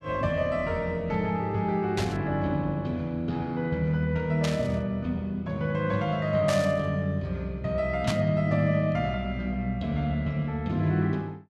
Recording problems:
burst of static; 4 times, first at 2 s; peak -1 dB vs average level

